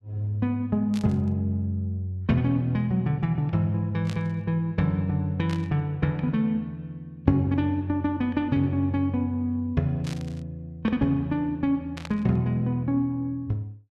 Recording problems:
static burst; 5 times, first at 1 s; peak -8 dB vs average level

